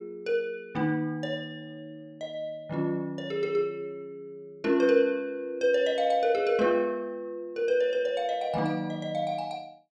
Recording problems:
none

